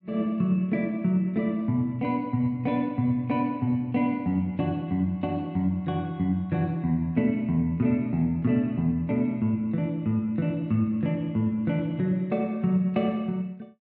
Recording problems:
none

